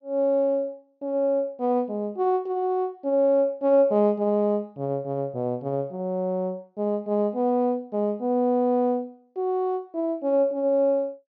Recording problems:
low-pass filter; nothing above 6.8 kHz

